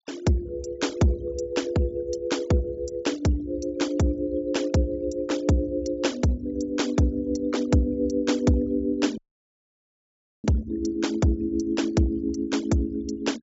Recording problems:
treble cut off; nothing above 7.5 kHz
noise reduction artefacts; signal-to-artefact ratio 21 dB
dropout; at 9 s for 1.5 s

